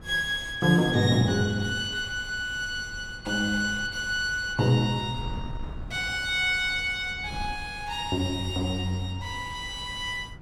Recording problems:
wind noise; below 150 Hz, SNR 16 dB

